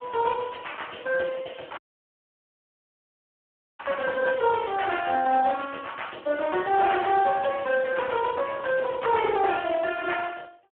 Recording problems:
telephone audio; 280 Hz to 3.2 kHz, Speex
audio cutting out; at 2 s for 2 s

